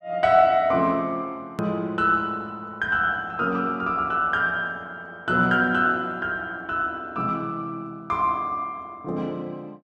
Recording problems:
hard cut with a click; at 1.5 s

